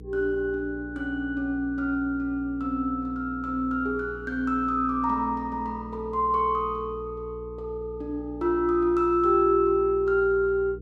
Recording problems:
hum; 60 Hz, harmonics up to 480 Hz, SNR 16 dB

